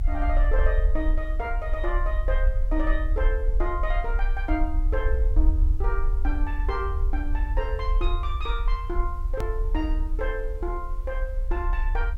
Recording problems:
background hiss; slope -5 dB per octave, SNR 26 dB
rumble; below 52 Hz, strongest tone 32 Hz, SNR -5 dB
click at an edit; at 9.5 s

